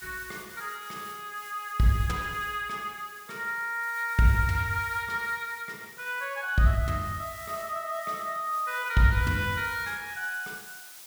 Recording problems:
background hiss; slope +2 dB per octave, SNR 16 dB

